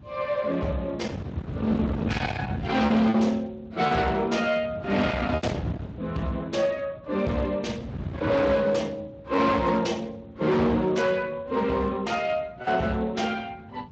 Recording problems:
codec artefacts; Vorbis, then Speex, log-spectral distance 3 dB
distortion; hard clipping, signal-to-distortion ratio 8 dB
wind on the microphone; below 740 Hz, SNR 7 dB
lost packets; 2% of the sound replaced, filled with repeated pitch periods

